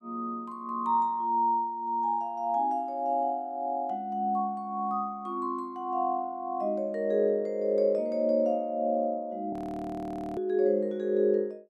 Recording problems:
audio freezing; at 9.5 s for 1 s

